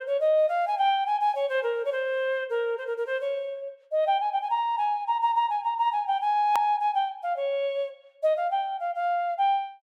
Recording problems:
hard cut with a click; at 6.5 s

